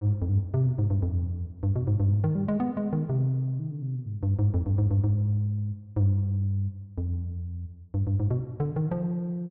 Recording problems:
none

